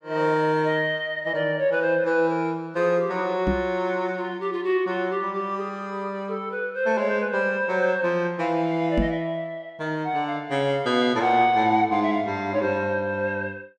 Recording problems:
microphone thump; at 3.5 s and at 9 s; peak +3 dB vs average level

